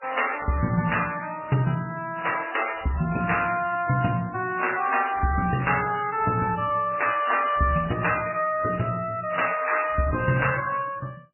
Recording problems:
lossy compression; MP3, then AAC, log-spectral distance 7 dB, nothing above 2.9 kHz

